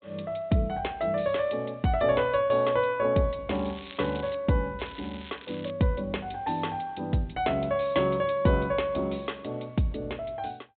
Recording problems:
treble cut off; nothing above 4 kHz
crackling; at 3.5 s and at 5 s; loose cable, SNR 19 dB

